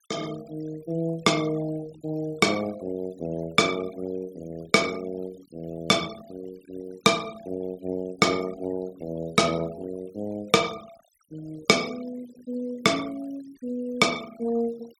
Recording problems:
denoising artefacts; signal-to-artefact ratio 19 dB

